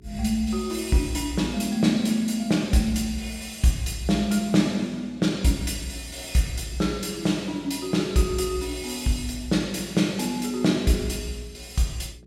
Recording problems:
electrical hum; 60 Hz, harmonics up to 420 Hz, SNR 25 dB

